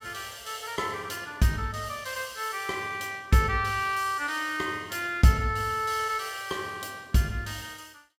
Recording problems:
none

